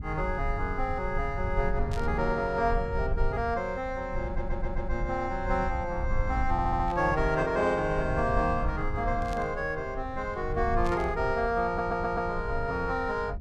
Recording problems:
rumble; below 72 Hz, SNR 7 dB
static burst; 4 times, first at 2 s; peak -10 dB vs average level
stutter; at 4.5 s, at 6.5 s and at 12 s

